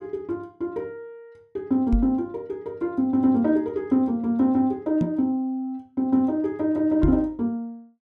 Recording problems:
knock on the microphone; at 2 s, at 5 s and at 7 s; peak +4 dB vs average level

